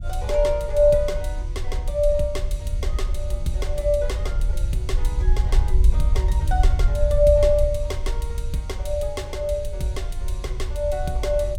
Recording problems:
low-frequency rumble; below 62 Hz, SNR 1 dB

